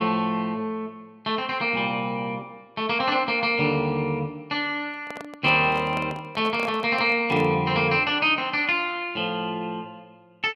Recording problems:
handling noise; from 5 to 7.5 s; peak -8 dB vs average level

